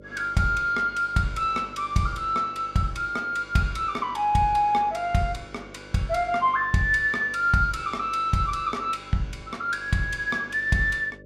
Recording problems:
hum; 50 Hz, harmonics up to 600 Hz, SNR 23 dB

